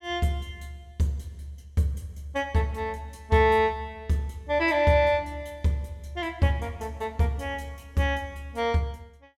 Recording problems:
none

